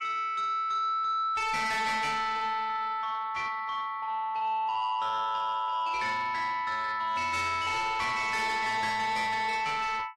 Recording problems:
codec artefacts; AAC, log-spectral distance 2 dB, nothing above 13.1 kHz
distortion; soft clipping, signal-to-distortion ratio 11 dB

